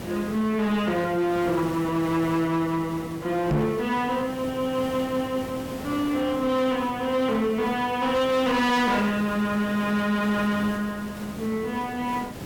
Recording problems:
distorted audio; hard clipping, uneven, signal-to-distortion ratio 10 dB
background hiss; slope -6 dB per octave, SNR 13 dB
knock on the microphone; at 3.5 s; peak +4 dB vs average level

